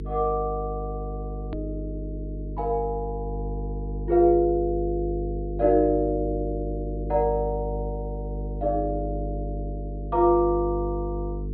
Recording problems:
low-pass filter; nothing above 4.6 kHz
mains hum; 50 Hz, harmonics up to 450 Hz, SNR 7 dB
click at an edit; at 1.5 s

